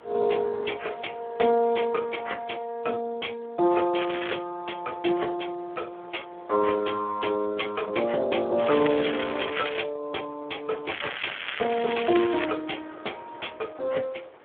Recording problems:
telephone audio; 300 Hz to 3.4 kHz, Speex
wind on the microphone; below 1.4 kHz, SNR 22 dB
crackle; at 4 s, from 8.5 to 10 s and from 11 to 12 s; loose cable, SNR 5 dB

